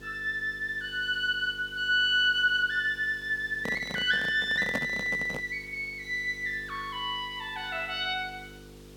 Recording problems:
electrical hum; 50 Hz, harmonics up to 500 Hz, SNR 22 dB
background hiss; slope 0 dB per octave, SNR 27 dB
microphone handling noise; from 3.5 to 5.5 s; peak 0 dB vs average level

